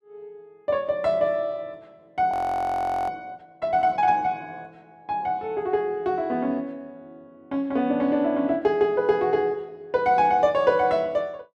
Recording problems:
frozen audio; at 2.5 s for 1 s

